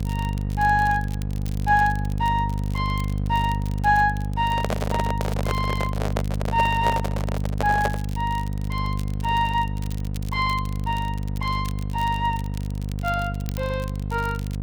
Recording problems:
electrical hum; 50 Hz, harmonics up to 500 Hz, SNR 2 dB
crackling; vinyl, SNR 20 dB
microphone handling noise; from 4.5 to 8 s; peak +4 dB vs average level

